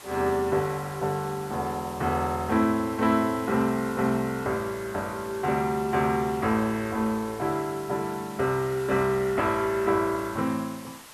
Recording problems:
background hiss; SNR 18 dB

